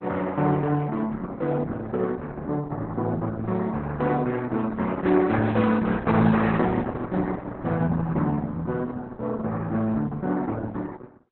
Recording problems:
lossy codec; Opus, then Opus, log-spectral distance 3 dB, nothing above 4 kHz

